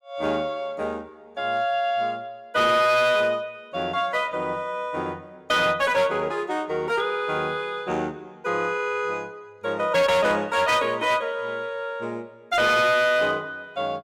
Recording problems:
distortion; hard clipping, signal-to-distortion ratio 12 dB

